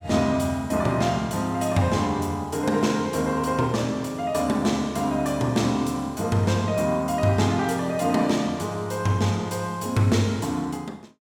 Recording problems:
none

